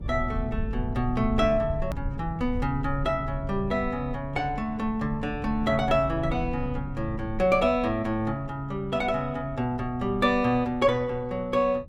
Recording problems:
rumble; below 100 Hz, SNR 10 dB
click at an edit; at 2 s

